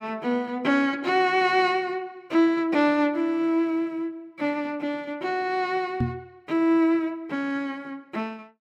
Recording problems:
microphone bump; at 6 s; peak +2 dB vs average level

